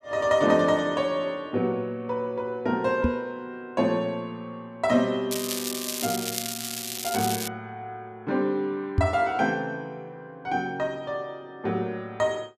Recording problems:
microphone thump; at 3 s and at 9 s; peak +8 dB vs average level
crackling; from 5.5 to 7.5 s; loose cable, SNR 3 dB

